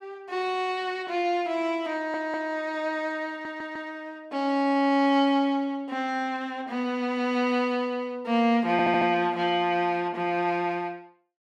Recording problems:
stutter; at 2 s, at 3.5 s and at 8.5 s

